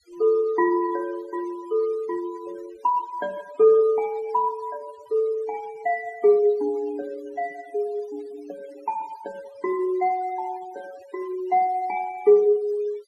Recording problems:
denoising artefacts; signal-to-artefact ratio 23 dB

